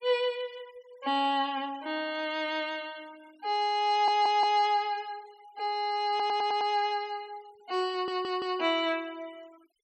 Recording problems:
noise reduction artefacts; signal-to-artefact ratio 27 dB
stutter; at 4 s, at 6 s and at 8 s

